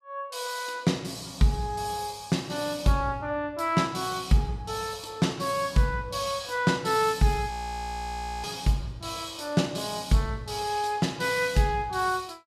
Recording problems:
frozen audio; at 7.5 s for 1 s

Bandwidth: 14 kHz